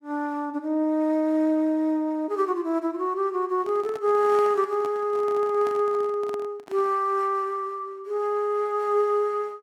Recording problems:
handling noise; from 3.5 to 7 s; peak -10 dB vs average level

